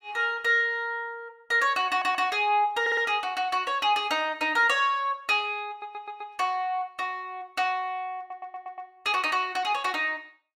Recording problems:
audio stuttering; 4 times, first at 2 s

